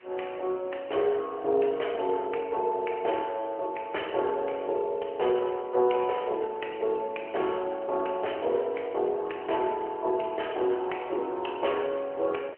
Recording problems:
telephone audio; 300 Hz to 3.1 kHz, AMR-NB
background hiss; SNR 27 dB

